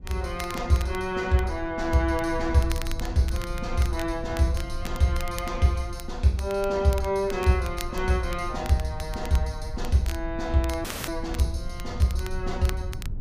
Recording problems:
low-frequency rumble; below 70 Hz, SNR 10 dB
crackling; vinyl, SNR 16 dB
audio cutting out; at 11 s

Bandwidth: 15 kHz